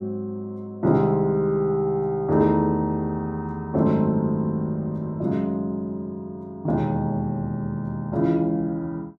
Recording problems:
none

